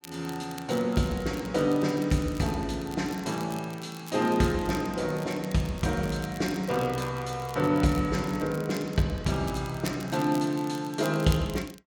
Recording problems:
crackling; vinyl, SNR 19 dB

